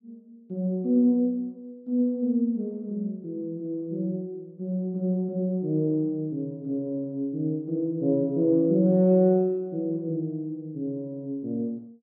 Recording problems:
none

